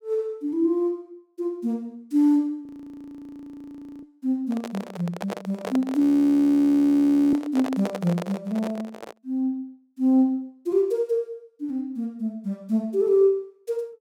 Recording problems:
frozen audio; at 2.5 s for 1.5 s and at 6 s for 1.5 s
microphone handling noise; from 4.5 to 9 s; peak -3 dB vs average level

